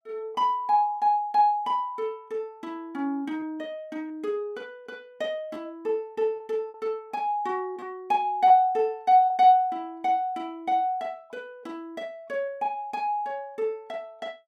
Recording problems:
lost packets; 1.9% of the sound replaced, filled with repeated pitch periods

